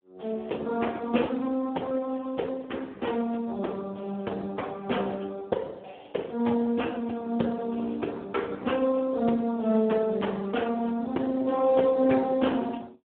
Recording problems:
phone line; 220 Hz to 3.7 kHz, Speex

